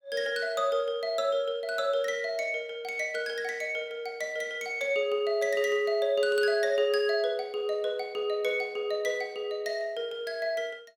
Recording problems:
none

